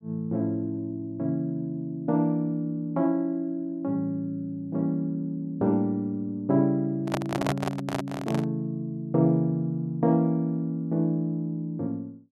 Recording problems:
handling noise; from 7 to 8.5 s; peak +3 dB vs average level

